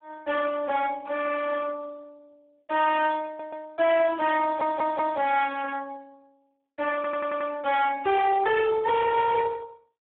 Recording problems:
telephone audio; 340 Hz to 2.3 kHz, Speex
distorted audio; hard clipping, signal-to-distortion ratio 5 dB
audio stuttering; at 3.5 s, at 4.5 s and at 7 s

